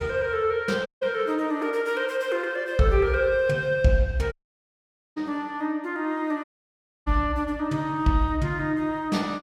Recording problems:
dropout; at 1 s, at 4.5 s for 1 s and at 6.5 s for 0.5 s

